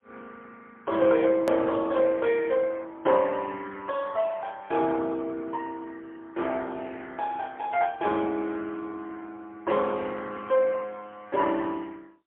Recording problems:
telephone audio; 280 Hz to 3.4 kHz, AMR-NB, then MP3
edit click; at 1.5 s

